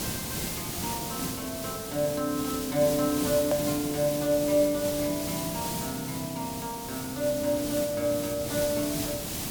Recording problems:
background hiss; SNR 4 dB
click at an edit; at 3.5 s

